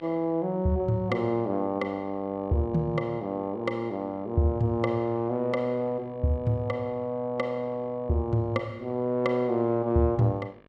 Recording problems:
electrical hum; 50 Hz, harmonics up to 3 kHz, SNR 29 dB

